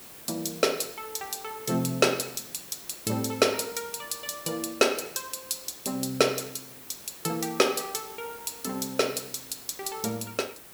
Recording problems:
background hiss; slope -3 dB per octave, SNR 14 dB

